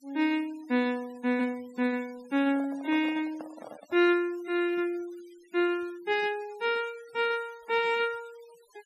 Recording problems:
denoising artefacts; signal-to-artefact ratio 24 dB
handling noise; from 2.5 to 4 s; peak -10 dB vs average level

